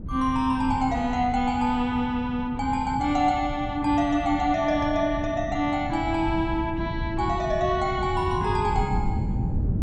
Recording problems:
wind on the microphone; below 170 Hz, SNR 8 dB

